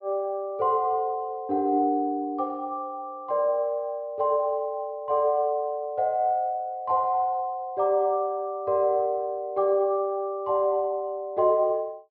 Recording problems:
low-pass filter; nothing above 5.5 kHz

